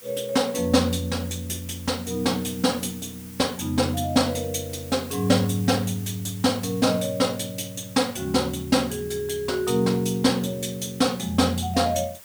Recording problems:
hiss; slope 0 dB per octave, SNR 18 dB

